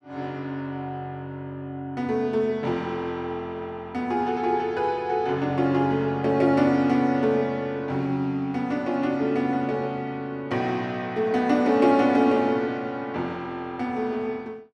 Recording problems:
none

